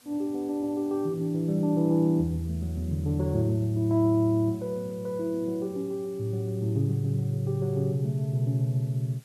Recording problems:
background hiss; slope 0 dB per octave, SNR 28 dB

